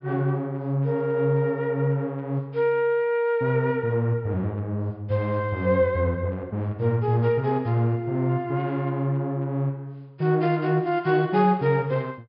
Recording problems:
treble cut off; nothing above 5.2 kHz

